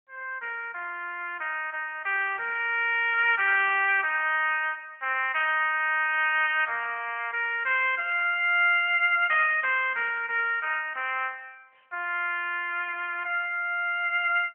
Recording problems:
phone line; 340 Hz to 3.2 kHz, AMR-NB

